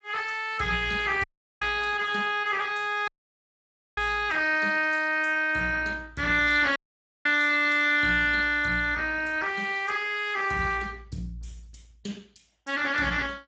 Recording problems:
lossy codec; Speex, log-spectral distance 5 dB, nothing above 7.3 kHz
dropout; at 1 s, at 3 s for 1 s and at 7 s

